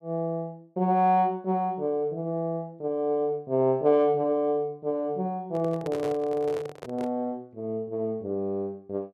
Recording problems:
microphone handling noise; from 5.5 to 7 s; peak -5 dB vs average level

